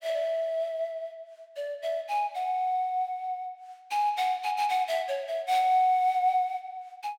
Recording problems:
none

